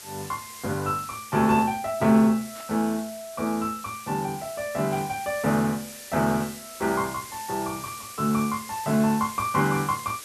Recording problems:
background hiss; slope +1 dB per octave, SNR 14 dB
static burst; at 2.5 s and at 5 s; peak -15 dB vs average level

